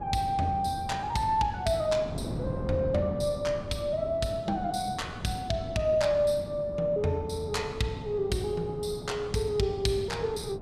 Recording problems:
wind on the microphone; below 320 Hz, SNR 10 dB

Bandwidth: 14.5 kHz